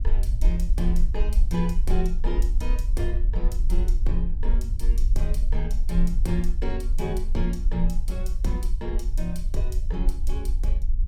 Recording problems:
rumble; below 44 Hz, strongest tone 20 Hz, SNR -5 dB

